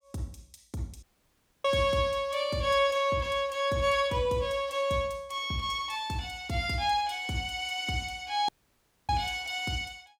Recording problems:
audio cutting out; at 1 s for 0.5 s and at 8.5 s for 0.5 s

